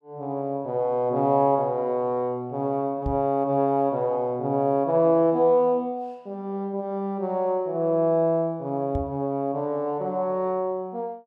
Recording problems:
microphone bump; at 3 s and at 9 s; peak -2 dB vs average level

